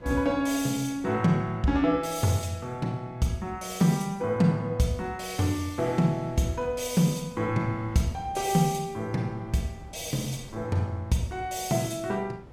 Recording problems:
wind noise; below 440 Hz, SNR 22 dB

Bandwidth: 16 kHz